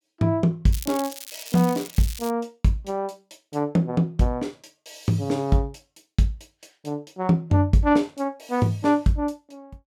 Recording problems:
crackle; from 0.5 to 2.5 s; loose cable, SNR 13 dB

